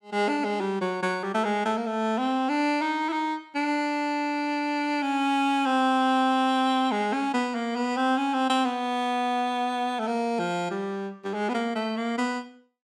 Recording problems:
none

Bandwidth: 15 kHz